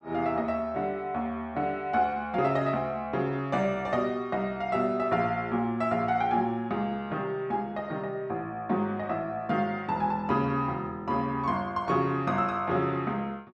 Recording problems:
none

